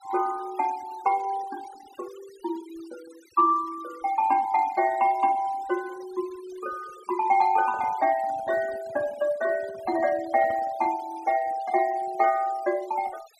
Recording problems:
denoising artefacts; signal-to-artefact ratio 21 dB
handling noise; from 7.5 to 11 s; peak -14 dB vs average level

